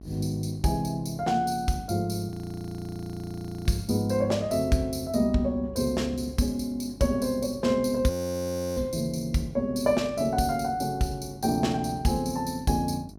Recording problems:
hum; 50 Hz, harmonics up to 800 Hz, SNR 19 dB
audio freezing; at 2.5 s for 1.5 s and at 8 s for 0.5 s

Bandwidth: 16.5 kHz